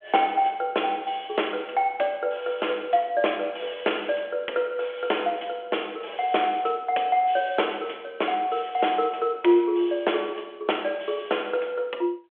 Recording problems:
telephone audio; 280 Hz to 3.4 kHz, G.726

